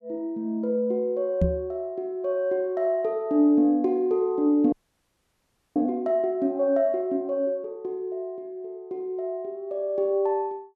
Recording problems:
microphone thump; at 1.5 s; peak +5 dB vs average level
audio freezing; at 4.5 s for 1 s

